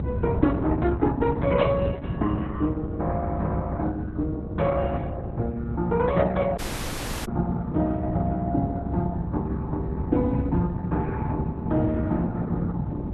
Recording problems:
lossy compression; Opus, log-spectral distance 2 dB
rumble; below 190 Hz, SNR 2 dB
dropout; at 6.5 s for 0.5 s

